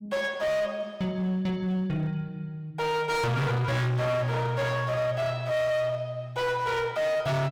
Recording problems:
distortion; hard clipping, signal-to-distortion ratio 7 dB

